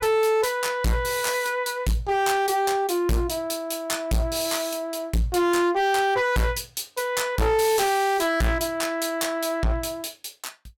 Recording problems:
distortion; hard clipping, uneven, signal-to-distortion ratio 7 dB

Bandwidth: 17 kHz